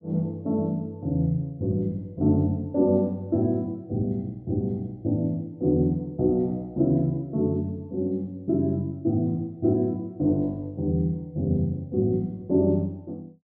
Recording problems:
none

